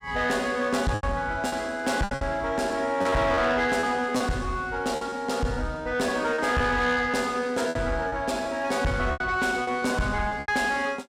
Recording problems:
distortion; soft clipping, signal-to-distortion ratio 11 dB
lost packets; 8% of the sound replaced, filled with repeated pitch periods

